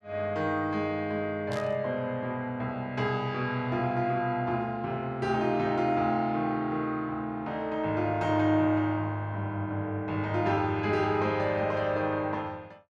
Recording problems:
static burst; at 1.5 s; peak -11 dB vs average level

